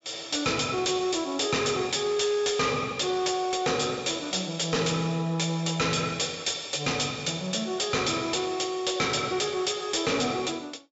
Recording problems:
treble missing; nothing above 8 kHz
distortion; hard clipping, signal-to-distortion ratio 6 dB

